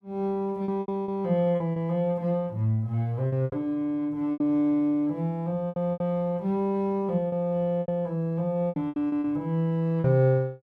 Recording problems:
packet loss; 9% of the sound replaced, filled with repeated pitch periods

